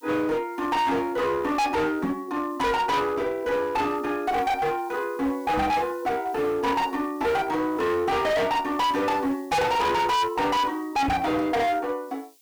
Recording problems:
distortion; hard clipping, uneven, signal-to-distortion ratio 6 dB
background hiss; SNR 28 dB
knock on the microphone; at 2 s, at 5.5 s and at 11 s; peak -1 dB vs average level

